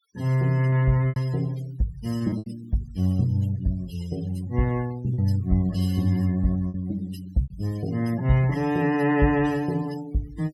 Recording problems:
denoising artefacts; signal-to-artefact ratio 20 dB
lost packets; 4% of the sound replaced, filled with repeated pitch periods

